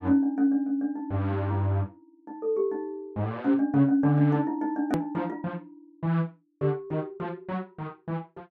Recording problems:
click at an edit; at 5 s

